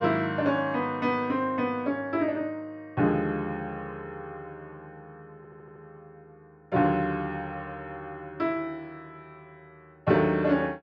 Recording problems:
audio stuttering; at 5.5 s

